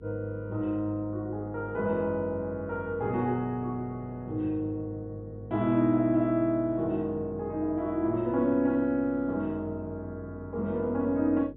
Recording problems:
treble cut off; nothing above 4 kHz
mains hum; 50 Hz, harmonics up to 450 Hz, SNR 20 dB

